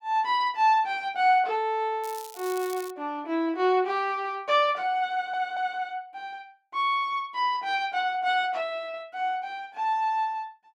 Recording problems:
crackling; at 2 s; loose cable, SNR 17 dB
audio stuttering; at 5 s

